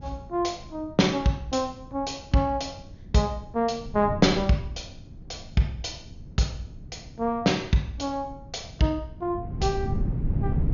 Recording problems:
treble missing; nothing above 6.8 kHz
wind noise; below 160 Hz, SNR 11 dB

